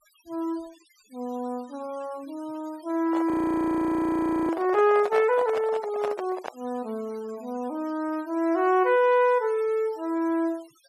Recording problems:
denoising artefacts; signal-to-artefact ratio 23 dB
handling noise; from 3 to 6.5 s; peak -2 dB vs average level
audio freezing; at 3.5 s for 1 s

